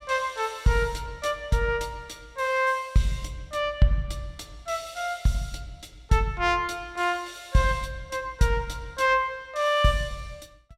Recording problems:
none

